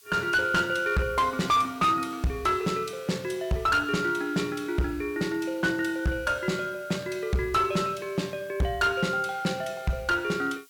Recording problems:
distorted audio; hard clipping, uneven, signal-to-distortion ratio 10 dB
background hiss; SNR 26 dB

